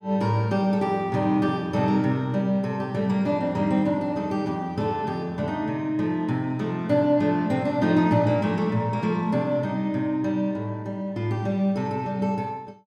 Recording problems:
none

